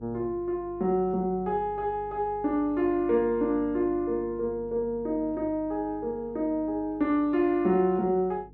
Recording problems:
electrical hum; 50 Hz, harmonics up to 450 Hz, SNR 22 dB

